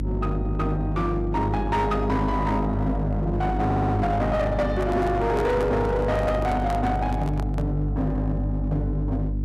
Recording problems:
distortion; hard clipping, signal-to-distortion ratio 10 dB
hum; 50 Hz, harmonics up to 350 Hz, SNR 3 dB
stutter; at 3.5 s
microphone handling noise; from 4.5 to 7.5 s; peak -5 dB vs average level

